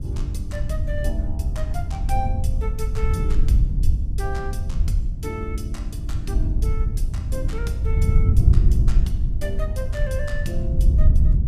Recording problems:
wind on the microphone; below 82 Hz, SNR -10 dB

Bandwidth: 15 kHz